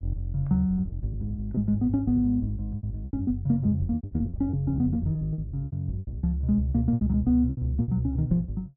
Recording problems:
treble cut off; nothing above 4 kHz
packet loss; 15% of the sound replaced, filled with repeated pitch periods

